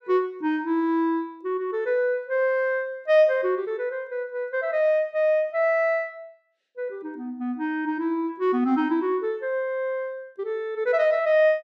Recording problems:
none

